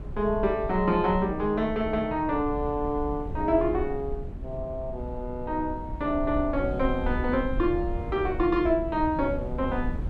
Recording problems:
wind on the microphone; below 110 Hz, SNR 9 dB

